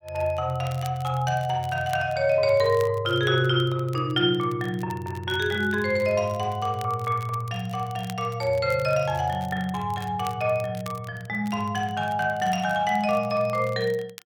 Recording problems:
crackle; vinyl, SNR 23 dB

